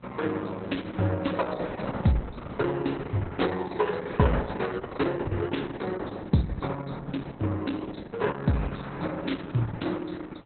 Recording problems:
lossy codec; Opus, log-spectral distance 6 dB, nothing above 4.1 kHz
wind on the microphone; below 960 Hz, SNR 24 dB

